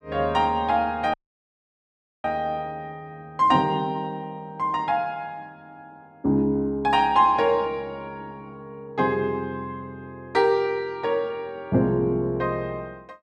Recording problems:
dropout; at 1 s for 1 s

